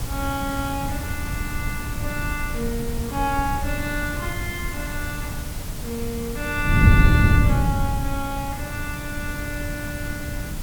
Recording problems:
background hiss; slope -2 dB per octave, SNR 8 dB
wind on the microphone; below 140 Hz, SNR -2 dB

